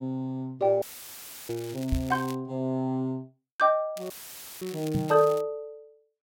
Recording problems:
audio cutting out; at 1 s for 0.5 s and at 4 s for 0.5 s; filled with static
crackling; at 1.5 s and from 4 to 5.5 s; loose cable, SNR 19 dB
knock on the microphone; at 2 s and at 5 s; peak +3 dB vs average level

